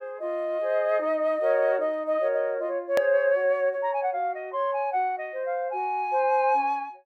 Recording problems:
click at an edit; at 3 s

